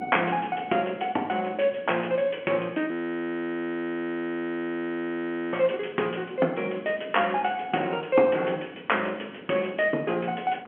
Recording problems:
telephone audio; 220 Hz to 3.3 kHz, G.711
wind on the microphone; below 490 Hz, SNR 19 dB
frozen audio; at 3 s for 2.5 s

